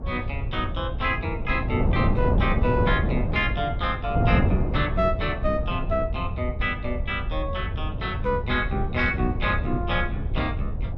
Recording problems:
low-frequency rumble; below 92 Hz, SNR 5 dB
wind noise; below 230 Hz, SNR 2 dB

